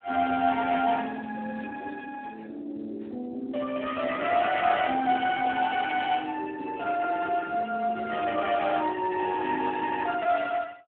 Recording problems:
phone line; 240 Hz to 2.8 kHz, Speex

